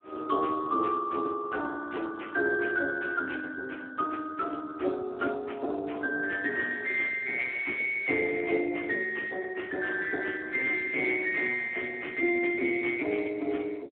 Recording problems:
telephone audio; 260 Hz to 3.3 kHz, Speex

